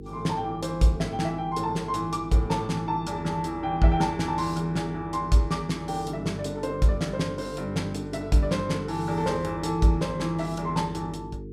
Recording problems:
hum; 50 Hz, harmonics up to 450 Hz, SNR 13 dB

